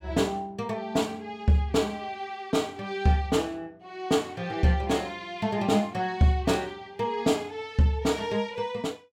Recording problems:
none

